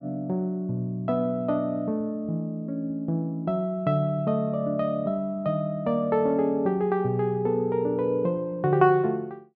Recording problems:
none

